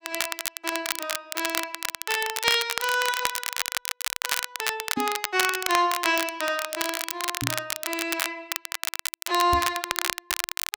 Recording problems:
crackling; vinyl, SNR 1 dB
knock on the microphone; at 5 s, at 7.5 s and at 9.5 s; peak +1 dB vs average level

